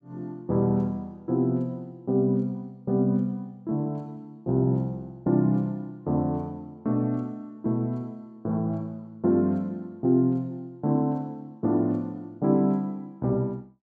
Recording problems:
none

